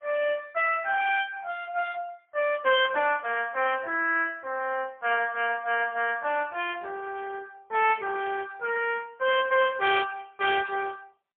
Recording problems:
phone line; 340 Hz to 3.5 kHz, AMR-NB, then MP3

